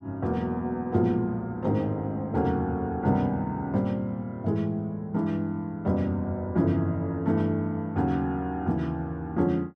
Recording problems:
none

